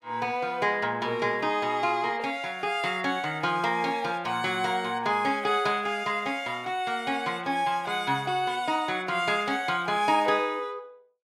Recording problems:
none

